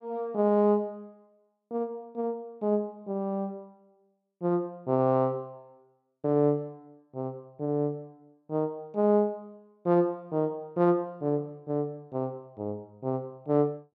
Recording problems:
none

